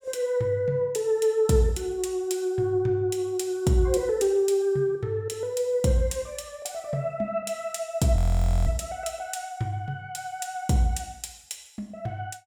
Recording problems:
frozen audio; at 8 s for 0.5 s

